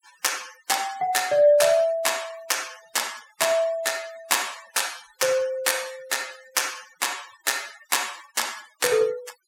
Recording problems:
denoising artefacts; signal-to-artefact ratio 19 dB

